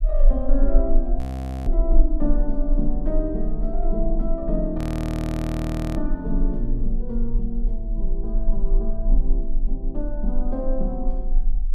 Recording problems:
rumble; below 34 Hz, strongest tone 18 Hz, SNR -3 dB
frozen audio; at 1 s and at 5 s for 1 s

